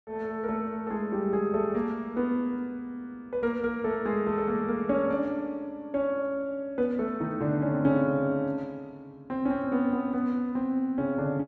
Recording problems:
none

